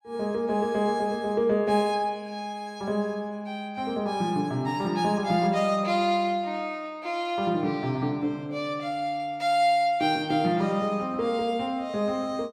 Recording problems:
none

